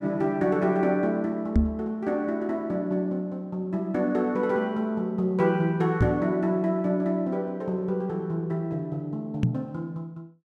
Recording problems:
microphone thump; at 1.5 s, at 6 s and at 9.5 s; peak +9 dB vs average level

